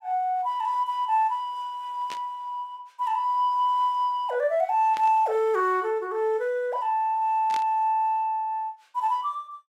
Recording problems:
burst of static; at 2 s, at 5 s and at 7.5 s; peak -8 dB vs average level

